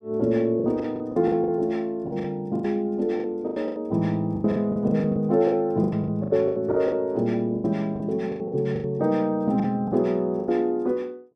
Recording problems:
packet loss; 16% of the sound replaced, filled with the last packet

